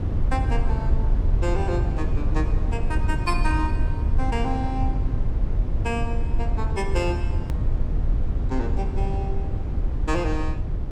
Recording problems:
low-frequency rumble; below 84 Hz, SNR -5 dB
edit click; at 7.5 s

